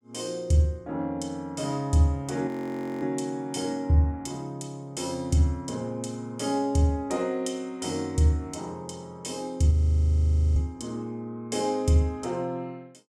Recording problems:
frozen audio; at 2.5 s for 0.5 s and at 9.5 s for 1 s

